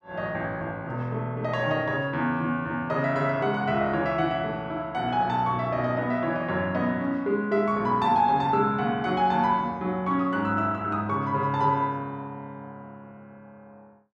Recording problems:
none

